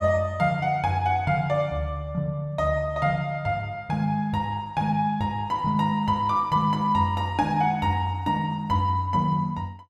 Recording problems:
none

